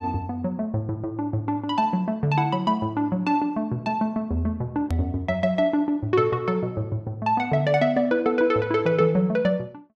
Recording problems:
hard cut with a click; at 5 s

